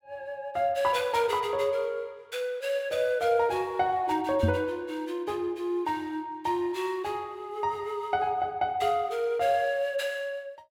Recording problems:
microphone bump; at 4.5 s; peak +6 dB vs average level

